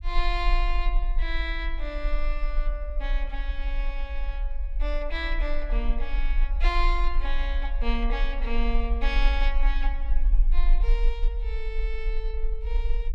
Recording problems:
rumble; below 40 Hz, strongest tone 20 Hz, SNR -5 dB

